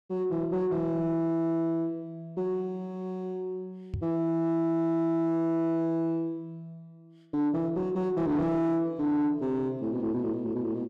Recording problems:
distortion; soft clipping, signal-to-distortion ratio 10 dB
knock on the microphone; at 4 s; peak -1 dB vs average level

